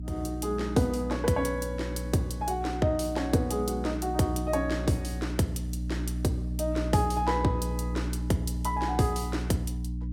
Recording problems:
hum; 60 Hz, harmonics up to 300 Hz, SNR 5 dB

